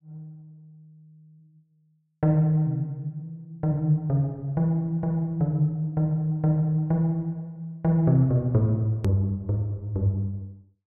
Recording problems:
edit click; at 9 s

